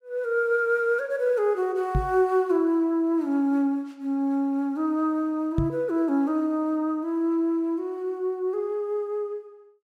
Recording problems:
microphone thump; at 2 s and at 5.5 s; peak +3 dB vs average level

